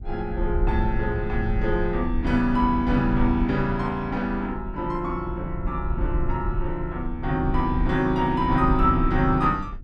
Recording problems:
low-frequency rumble; below 74 Hz, SNR 6 dB

